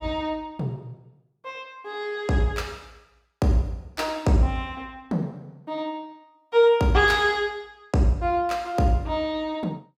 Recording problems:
none

